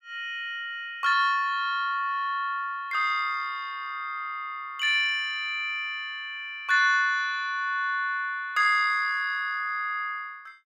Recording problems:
none

